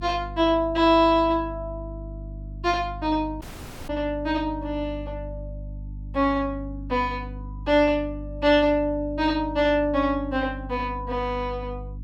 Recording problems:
electrical hum; 50 Hz, harmonics up to 300 Hz, SNR 13 dB
dropout; at 3.5 s

